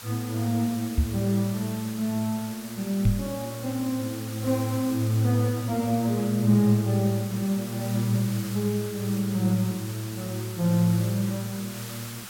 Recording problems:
background hiss; SNR 13 dB
microphone thump; at 1 s and at 3 s; peak +7 dB vs average level

